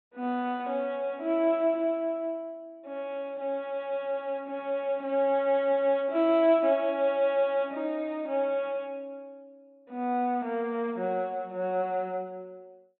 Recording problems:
treble missing; nothing above 4 kHz

